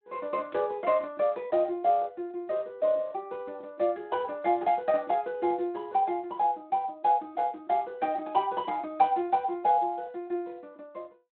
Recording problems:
phone line; 220 Hz to 3.9 kHz, Speex

